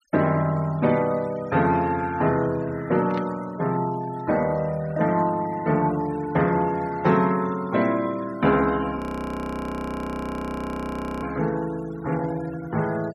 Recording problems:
noise reduction artefacts; signal-to-artefact ratio 20 dB
static burst; at 3 s; peak -12 dB vs average level
frozen audio; at 9 s for 2 s

